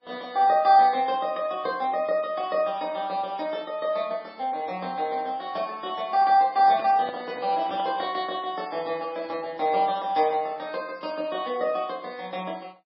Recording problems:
lossy codec; MP3, log-spectral distance 2 dB, nothing above 4.5 kHz
handling noise; from 6.5 to 8 s; peak -7 dB vs average level

